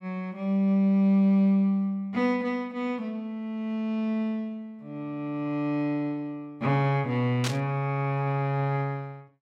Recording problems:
static burst; at 7.5 s; peak 0 dB vs average level

